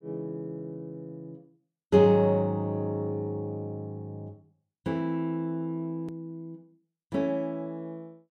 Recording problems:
click at an edit; at 6 s

